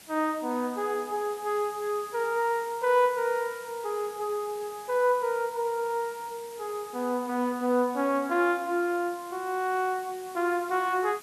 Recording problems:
background hiss; slope -1 dB per octave, SNR 19 dB

